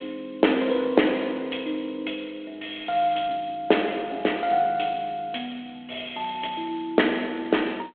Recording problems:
telephone audio; 240 Hz to 3.4 kHz, G.726

